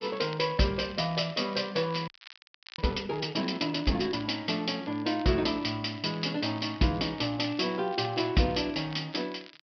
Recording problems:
treble cut off; nothing above 5.5 kHz
crackle; vinyl, SNR 21 dB
frozen audio; at 2 s for 0.5 s

